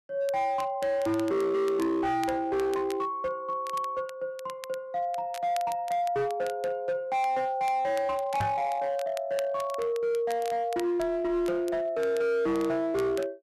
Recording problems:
distorted audio; hard clipping, signal-to-distortion ratio 11 dB
crackle; vinyl, SNR 20 dB
microphone bump; at 8.5 s; peak +2 dB vs average level

